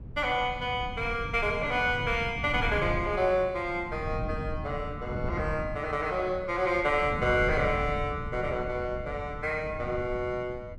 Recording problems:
wind on the microphone; below 160 Hz, SNR 9 dB

